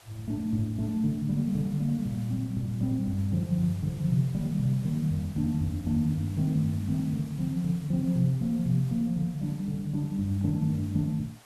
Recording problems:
hiss; SNR 24 dB

